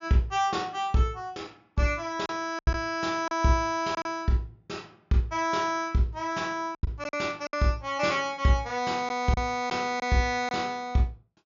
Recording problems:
low-pass filter; nothing above 7 kHz
lost packets; 5% of the sound replaced, filled with silence

